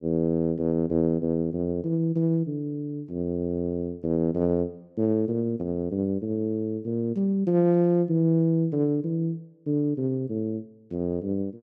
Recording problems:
none

